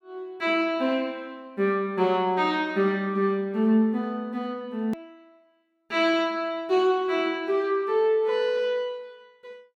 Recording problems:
hard cut with a click; at 5 s

